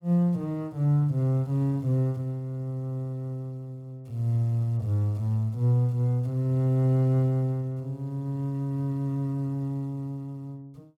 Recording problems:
none

